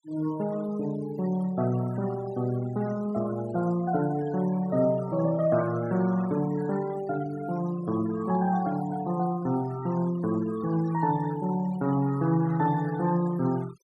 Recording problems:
noise reduction artefacts; signal-to-artefact ratio 18 dB

